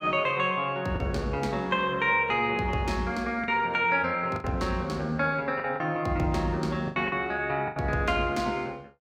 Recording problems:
lost packets; 5% of the sound replaced, filled with the last packet

